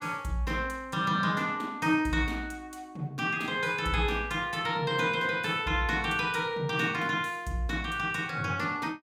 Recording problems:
none

